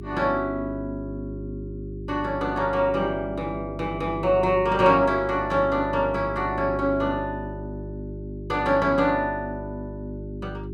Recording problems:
hum; 50 Hz, harmonics up to 400 Hz, SNR 11 dB

